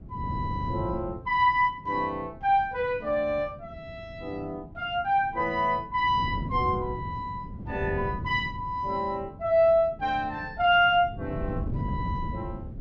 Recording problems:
wind noise; below 200 Hz, SNR 11 dB

